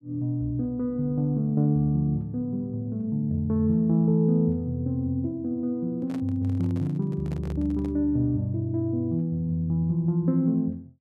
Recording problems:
handling noise; from 6 to 8 s; peak -11 dB vs average level

